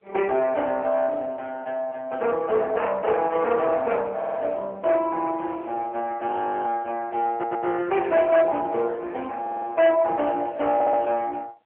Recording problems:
telephone audio; 370 Hz to 3.1 kHz, AMR-NB
distortion; soft clipping, signal-to-distortion ratio 10 dB
stutter; 4 times, first at 4 s
frozen audio; at 6.5 s

